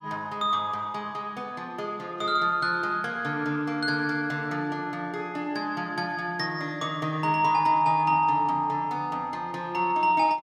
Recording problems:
none

